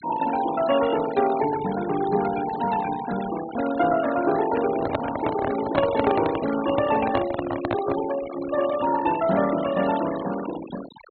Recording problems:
treble missing; nothing above 4.2 kHz
noise reduction artefacts; signal-to-artefact ratio 12 dB
microphone handling noise; from 4.5 to 8 s; peak +3 dB vs average level

